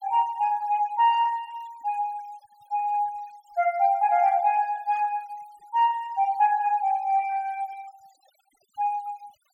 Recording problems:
denoising artefacts; signal-to-artefact ratio 27 dB

